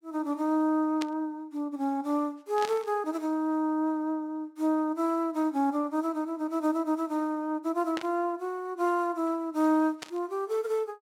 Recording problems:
burst of static; 4 times, first at 1 s; peak -3 dB vs average level

